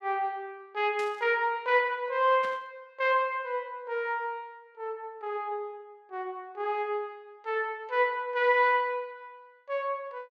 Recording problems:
burst of static; at 1 s and at 2.5 s; peak -10 dB vs average level

